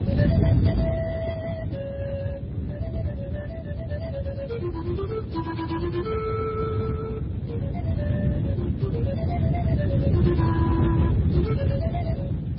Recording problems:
lossy compression; Speex, then MP3, log-spectral distance 2 dB, nothing above 5 kHz
wind on the microphone; below 190 Hz, SNR -6 dB

